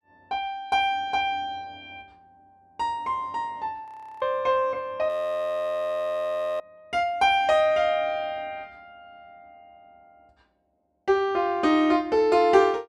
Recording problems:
frozen audio; at 4 s and at 5 s for 1.5 s

